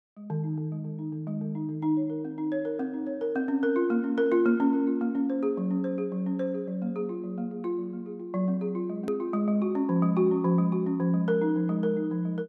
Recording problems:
edit click; at 9 s

